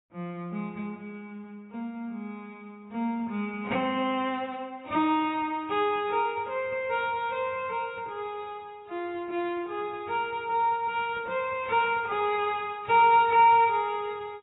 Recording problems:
lossy compression; AAC, log-spectral distance 2 dB, nothing above 3.3 kHz

